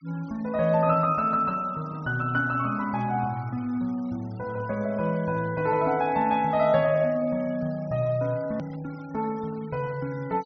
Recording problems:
treble missing; nothing above 6.2 kHz
denoising artefacts; signal-to-artefact ratio 25 dB
click at an edit; at 8.5 s

